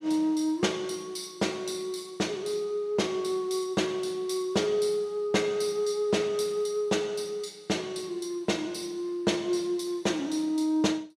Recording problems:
none

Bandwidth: 15 kHz